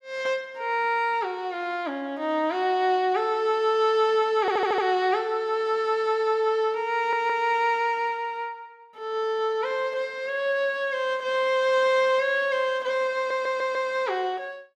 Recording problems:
stutter; at 4.5 s, at 7 s and at 13 s

